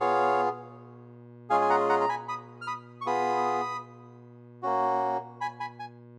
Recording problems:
electrical hum; 60 Hz, harmonics up to 1.1 kHz, SNR 21 dB

